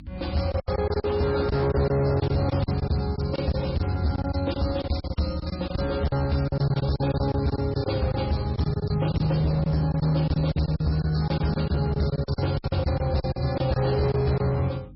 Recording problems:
codec artefacts; MP3, log-spectral distance 5 dB, nothing above 5.3 kHz
distortion; hard clipping, signal-to-distortion ratio 11 dB
hum; 50 Hz, harmonics up to 300 Hz, SNR 21 dB
packet loss; 14% of the sound replaced, filled with silence

